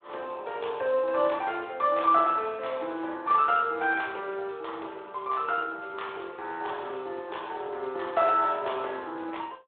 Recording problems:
telephone audio; 320 Hz to 3.7 kHz, Speex

